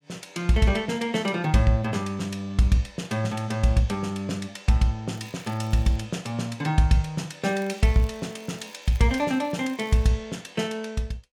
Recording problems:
crackling; at 5 s and from 7.5 to 10 s; loose cable, SNR 28 dB

